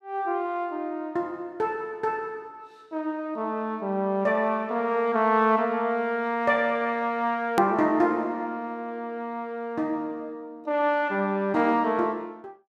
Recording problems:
click at an edit; at 7.5 s

